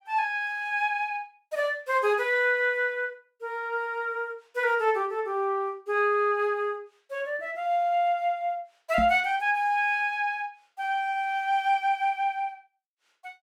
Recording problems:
microphone bump; at 9 s; peak -1 dB vs average level

